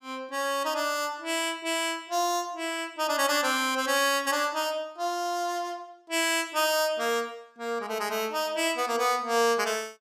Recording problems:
none

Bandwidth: 15 kHz